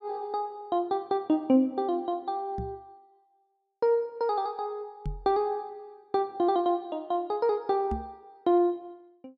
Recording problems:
knock on the microphone; at 2.5 s, at 5 s and at 8 s; peak -2 dB vs average level

